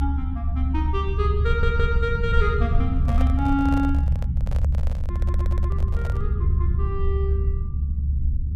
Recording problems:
rumble; below 76 Hz, SNR -4 dB
stutter; at 1.5 s and at 5 s
microphone handling noise; from 3 to 6.5 s; peak -2 dB vs average level

